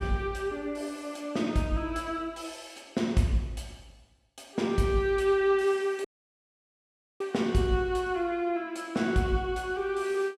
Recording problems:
audio cutting out; at 6 s for 1 s

